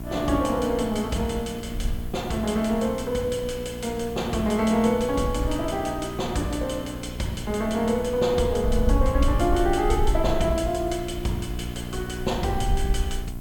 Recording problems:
hum; 60 Hz, harmonics up to 1.4 kHz, SNR 11 dB
background hiss; SNR 23 dB
wind on the microphone; below 64 Hz, SNR 5 dB

